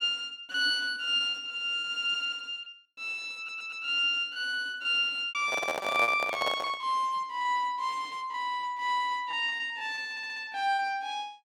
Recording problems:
packet loss; 15% of the sound replaced, filled with repeated pitch periods
stutter; at 3.5 s and at 10 s
microphone handling noise; from 5.5 to 7 s; peak +2 dB vs average level

